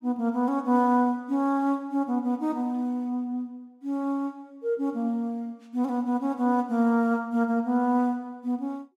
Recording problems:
none

